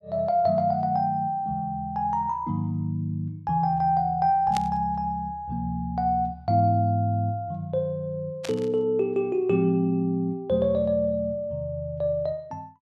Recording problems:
burst of static; at 4.5 s and at 8.5 s; peak -4 dB vs average level

